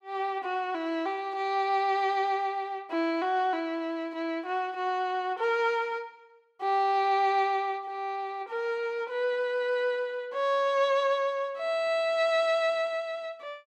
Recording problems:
none

